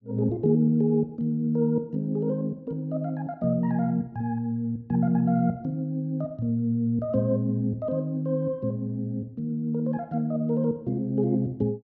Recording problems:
none

